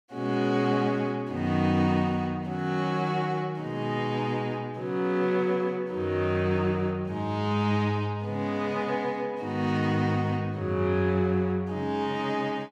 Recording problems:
none

